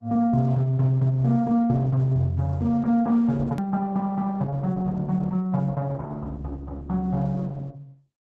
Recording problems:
lossy codec; Opus, log-spectral distance 2 dB, nothing above 13.1 kHz
click at an edit; at 3.5 s

